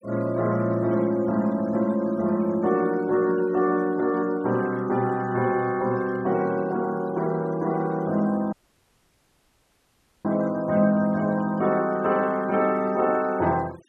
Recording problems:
noise reduction artefacts; signal-to-artefact ratio 24 dB
dropout; at 8.5 s for 1.5 s

